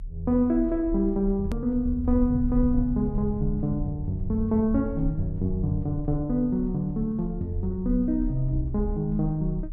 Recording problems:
low-frequency rumble; below 64 Hz, strongest tone 36 Hz, SNR 9 dB
click at an edit; at 1.5 s

